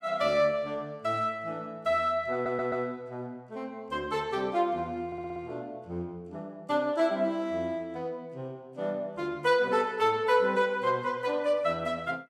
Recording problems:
audio stuttering; at 2.5 s and at 5 s

